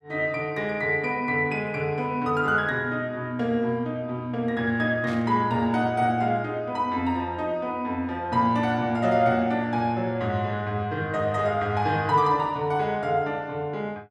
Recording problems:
static burst; at 5 s; peak -13 dB vs average level

